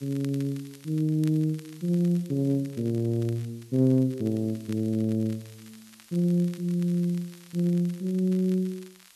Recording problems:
hiss; slope +2 dB per octave, SNR 27 dB
crackle; vinyl, SNR 26 dB

